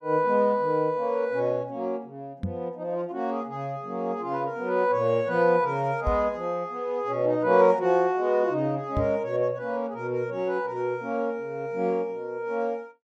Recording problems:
knock on the microphone; at 2.5 s, at 6 s and at 9 s; peak +1 dB vs average level

